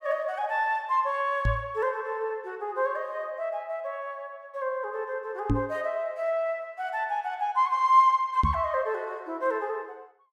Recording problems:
knock on the microphone; at 1.5 s, at 5.5 s and at 8.5 s; peak +5 dB vs average level

